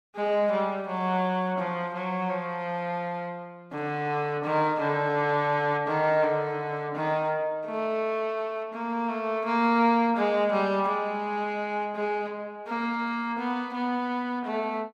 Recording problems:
none

